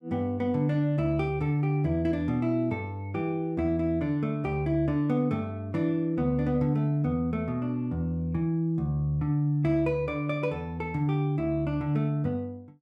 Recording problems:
none

